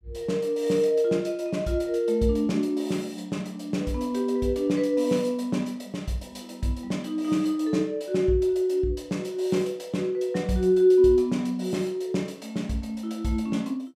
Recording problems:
none

